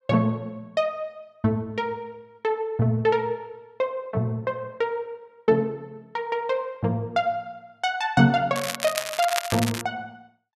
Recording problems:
crackling; from 8.5 to 10 s; loose cable, SNR 5 dB

